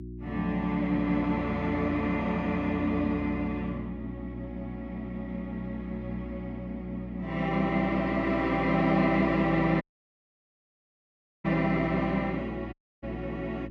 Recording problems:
electrical hum; 60 Hz, harmonics up to 360 Hz, SNR 11 dB
dropout; at 10 s for 1.5 s and at 13 s

